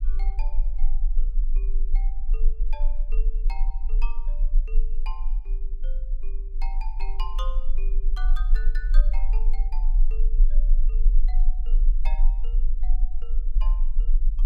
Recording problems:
low-frequency rumble; below 32 Hz, strongest tone 22 Hz, SNR -18 dB

